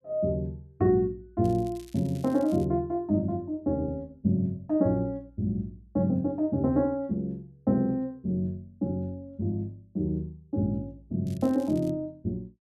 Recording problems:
crackle; from 1.5 to 2.5 s and at 11 s; loose cable, SNR 25 dB

